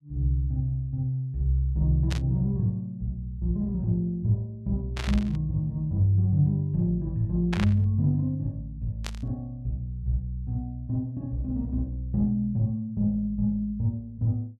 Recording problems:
static burst; 4 times, first at 2 s; peak -2 dB vs average level

